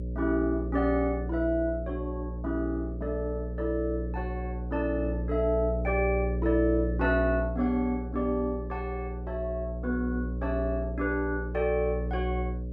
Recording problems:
electrical hum; 60 Hz, harmonics up to 600 Hz, SNR 4 dB

